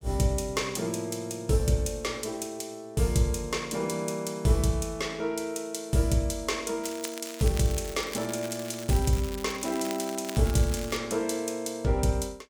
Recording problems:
crackling; from 7 to 11 s; loose cable, SNR 13 dB

